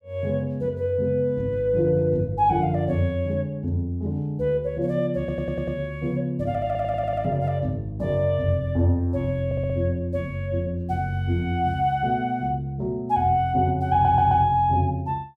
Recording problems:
audio stuttering; 4 times, first at 5 s

